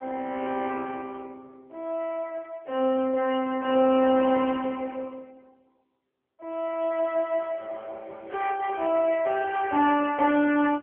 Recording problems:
telephone audio; 260 Hz to 2.2 kHz, AMR-NB

